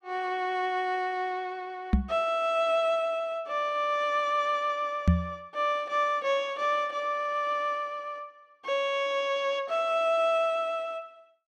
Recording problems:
knock on the microphone; at 2 s and at 5 s; peak +9 dB vs average level

